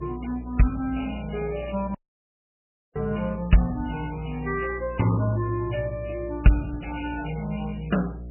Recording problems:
codec artefacts; MP3, log-spectral distance 9 dB, nothing above 2.9 kHz
electrical hum; 60 Hz, harmonics up to 660 Hz, SNR 12 dB
dropout; at 2 s for 1 s

